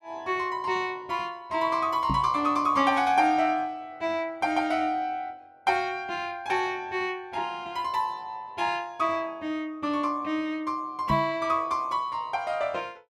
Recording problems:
microphone thump; at 2 s and at 11 s; peak +2 dB vs average level

